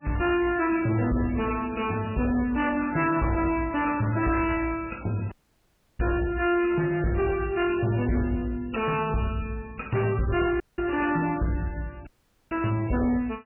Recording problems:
lossy compression; MP3, log-spectral distance 5 dB, nothing above 2.8 kHz
distortion; soft clipping, signal-to-distortion ratio 10 dB
audio cutting out; at 5.5 s for 0.5 s, at 11 s and at 12 s

